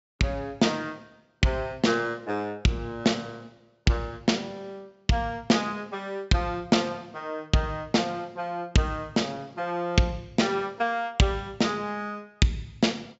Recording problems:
treble cut off; nothing above 8 kHz

